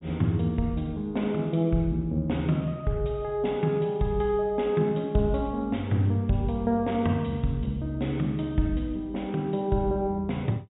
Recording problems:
treble cut off; nothing above 4 kHz

